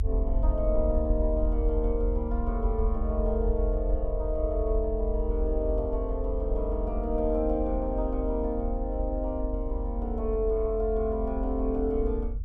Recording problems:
low-frequency rumble; below 62 Hz, strongest tone 42 Hz, SNR 1 dB

